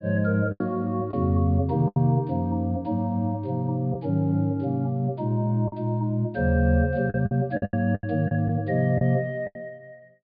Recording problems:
low-pass filter; nothing above 4.9 kHz
packet loss; 7% of the sound replaced, filled with the last packet

